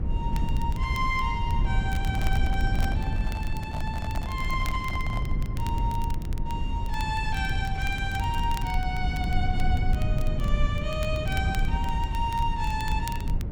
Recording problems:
rumble; below 100 Hz, SNR -3 dB
crackling; vinyl, SNR 15 dB
handling noise; from 2 to 5.5 s; peak -4 dB vs average level

